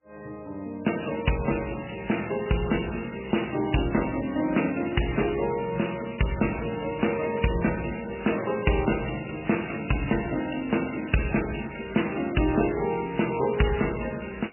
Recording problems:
lossy compression; MP3, log-spectral distance 11 dB, nothing above 2.9 kHz

